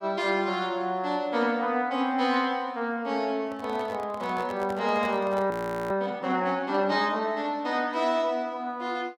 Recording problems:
handling noise; from 3.5 to 6 s; peak -7 dB vs average level
audio freezing; at 5.5 s

